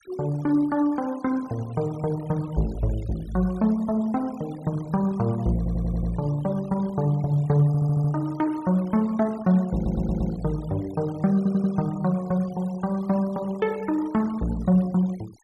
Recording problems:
denoising artefacts; signal-to-artefact ratio 24 dB
audio stuttering; 4 times, first at 5.5 s

